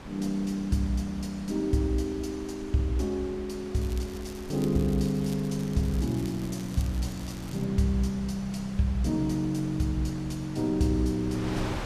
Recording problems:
wind on the microphone; below 1.1 kHz, SNR 14 dB
crackling; from 4 to 7.5 s; loose cable, SNR 20 dB

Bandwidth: 14.5 kHz